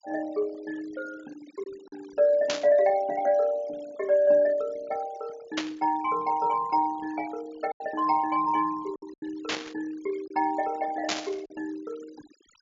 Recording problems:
treble missing; nothing above 7.3 kHz
denoising artefacts; signal-to-artefact ratio 22 dB
packet loss; 3% of the sound replaced, filled with silence
burst of static; 4 times, first at 2.5 s; peak +3 dB vs average level

